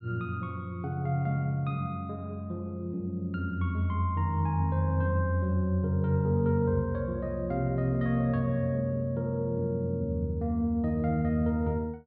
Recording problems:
none

